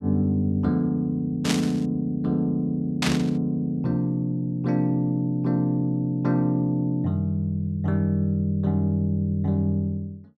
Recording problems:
burst of static; at 1.5 s and at 3 s; peak +3 dB vs average level

